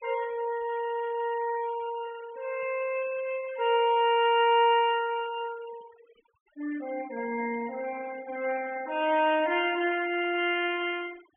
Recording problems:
treble missing; nothing above 3.2 kHz
denoising artefacts; signal-to-artefact ratio 20 dB

